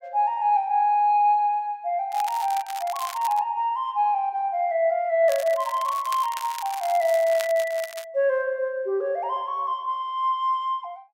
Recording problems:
crackling; from 2 to 3.5 s and from 5.5 to 8 s; loose cable, SNR 15 dB

